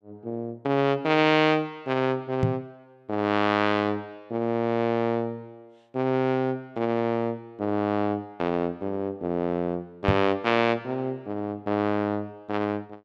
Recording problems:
knock on the microphone; at 2.5 s and at 10 s; peak +6 dB vs average level

